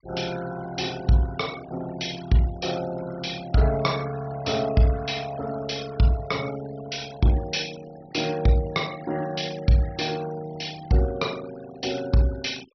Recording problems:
treble cut off; nothing above 5.8 kHz
denoising artefacts; signal-to-artefact ratio 18 dB

